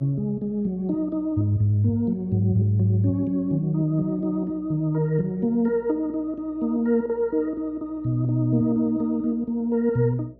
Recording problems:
electrical hum; 60 Hz, harmonics up to 660 Hz, SNR 28 dB

